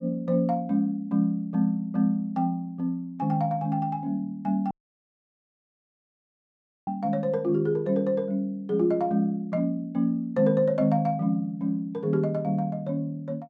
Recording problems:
dropout; at 4.5 s for 2 s

